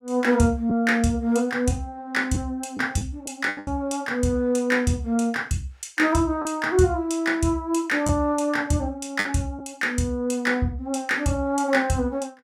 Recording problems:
lost packets; 3% of the sound replaced, filled with the last packet

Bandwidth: 16 kHz